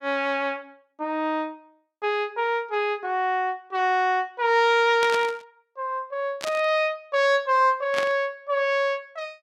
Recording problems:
static burst; at 5 s, at 6.5 s and at 8 s; peak -2 dB vs average level

